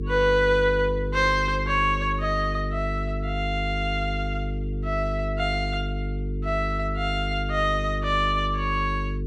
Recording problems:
hum; 50 Hz, harmonics up to 450 Hz, SNR 4 dB

